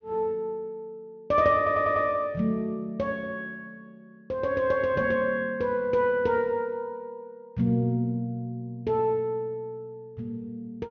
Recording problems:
treble cut off; nothing above 6.4 kHz
stutter; at 1.5 s

